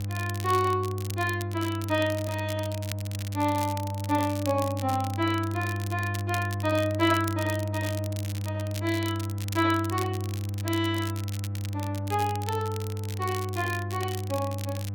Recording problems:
hum; 50 Hz, harmonics up to 500 Hz, SNR 3 dB
crackle; vinyl, SNR 12 dB

